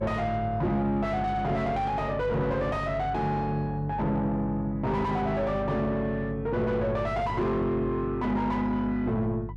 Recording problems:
distortion; soft clipping, signal-to-distortion ratio 7 dB
hum; 50 Hz, harmonics up to 350 Hz, SNR 11 dB

